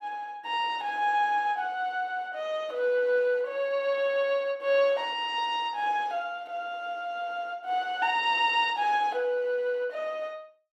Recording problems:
none

